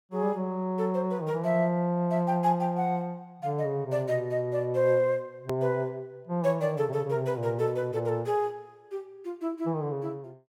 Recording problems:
edit click; at 5.5 s

